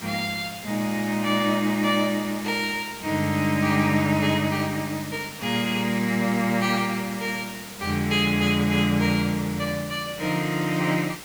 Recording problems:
background hiss; slope -1 dB per octave, SNR 14 dB

